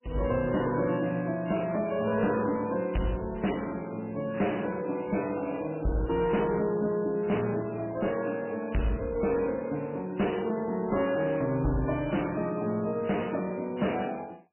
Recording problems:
lossy codec; MP3, log-spectral distance 8 dB, nothing above 2.9 kHz
distortion; hard clipping, signal-to-distortion ratio 12 dB

